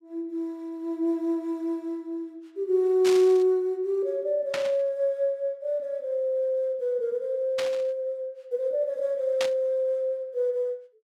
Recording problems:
burst of static; 4 times, first at 3 s; peak 0 dB vs average level

